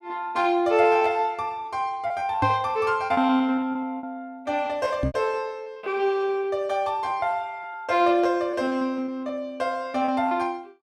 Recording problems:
packet loss; 10% of the sound replaced, filled with repeated pitch periods
microphone thump; at 2.5 s and at 5 s; peak +2 dB vs average level

